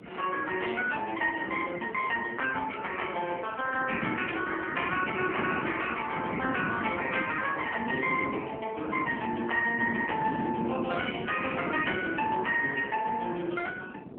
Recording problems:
telephone audio; 260 Hz to 3.1 kHz, AMR-NB
wind on the microphone; below 410 Hz, SNR 8 dB

